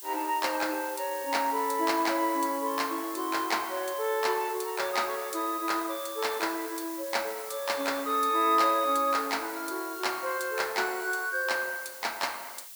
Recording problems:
background hiss; slope +3 dB per octave, SNR 11 dB

